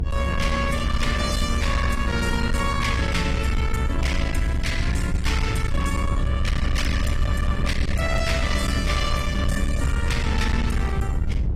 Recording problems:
codec artefacts; AAC, log-spectral distance 3 dB
distortion; soft clipping, signal-to-distortion ratio 10 dB
low-frequency rumble; below 110 Hz, SNR 0 dB

